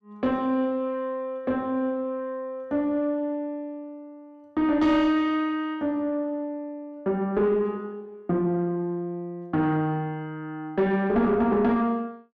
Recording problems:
distorted audio; soft clipping, signal-to-distortion ratio 11 dB

